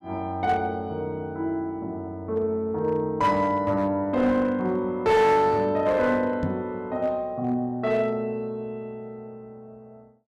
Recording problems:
distorted audio; hard clipping, uneven, signal-to-distortion ratio 12 dB
knock on the microphone; at 6.5 s; peak +1 dB vs average level

